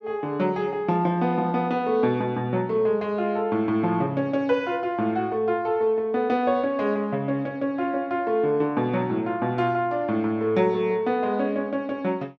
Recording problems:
none

